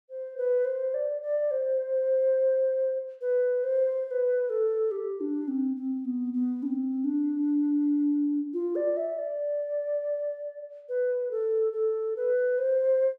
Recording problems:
none

